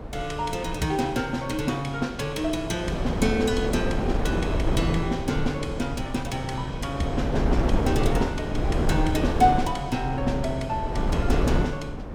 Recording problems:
wind on the microphone; below 350 Hz, SNR 1 dB

